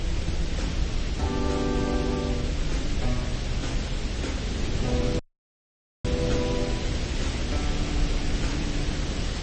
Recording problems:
codec artefacts; AAC, then MP3, log-spectral distance 5 dB, nothing above 8.2 kHz
hiss; SNR 1 dB
rumble; below 72 Hz, SNR 0 dB
wind noise; below 200 Hz, SNR 6 dB
audio cutting out; at 5 s for 1 s

